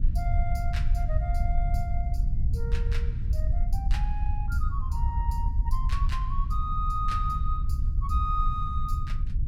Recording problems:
low-frequency rumble; below 70 Hz, SNR -5 dB

